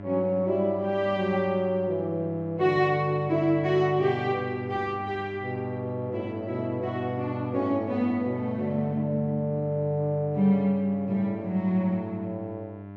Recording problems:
hum; 50 Hz, harmonics up to 1.7 kHz, SNR 14 dB

